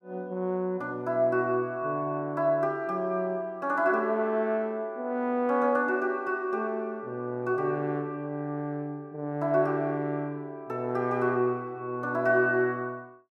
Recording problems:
none

